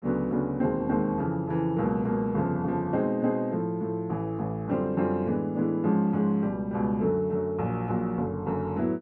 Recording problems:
none

